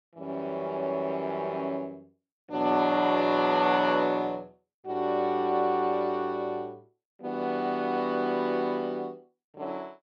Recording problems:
none

